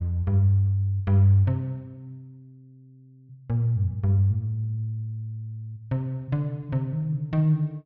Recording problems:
none

